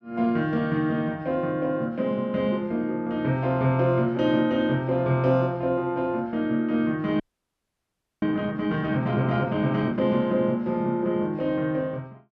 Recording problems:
audio freezing; at 7 s for 1 s

